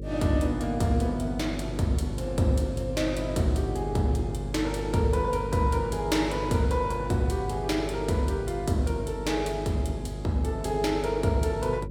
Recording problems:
electrical hum; 50 Hz, harmonics up to 550 Hz, SNR 8 dB

